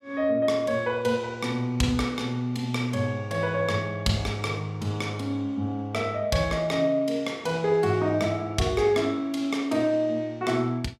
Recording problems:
none

